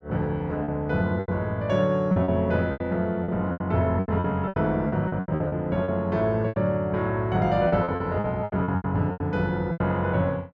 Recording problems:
packet loss; 14% of the sound replaced, filled with repeated pitch periods

